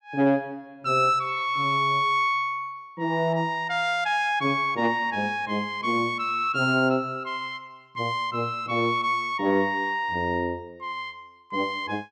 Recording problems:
none

